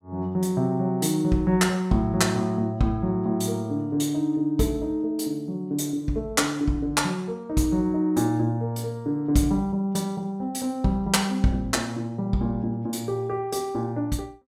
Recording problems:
none

